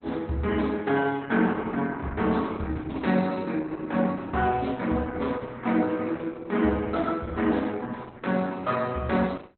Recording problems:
codec artefacts; Opus, log-spectral distance 3 dB, nothing above 4 kHz

